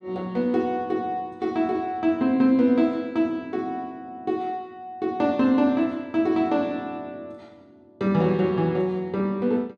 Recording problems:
none

